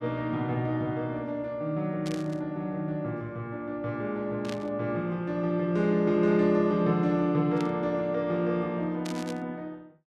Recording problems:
burst of static; 4 times, first at 2 s; peak -8 dB vs average level

